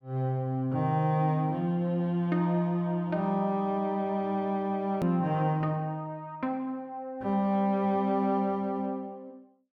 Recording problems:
edit click; at 5 s

